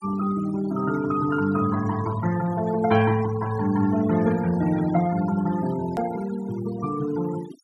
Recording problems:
denoising artefacts; signal-to-artefact ratio 15 dB
click at an edit; at 6 s

